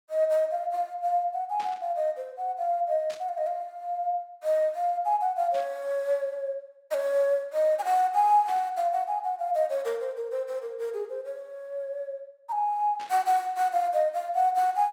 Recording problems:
static burst; 5 times, first at 1.5 s; peak -13 dB vs average level

